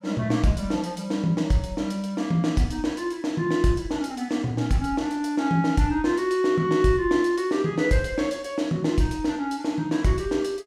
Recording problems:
none

